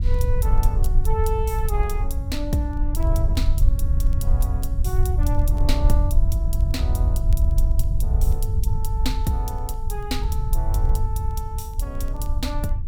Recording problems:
low-frequency rumble; below 72 Hz, SNR -7 dB
crackle; vinyl, SNR 28 dB

